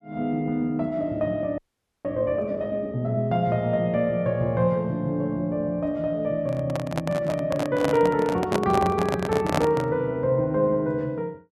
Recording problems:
frozen audio; at 1.5 s
microphone handling noise; from 6.5 to 10 s; peak +4 dB vs average level

